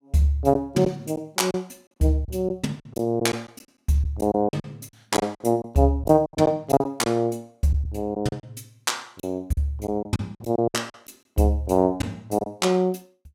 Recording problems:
lost packets; 10% of the sound replaced, filled with silence

